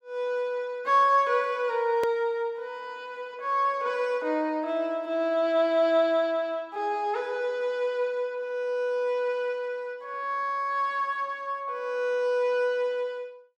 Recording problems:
edit click; at 2 s

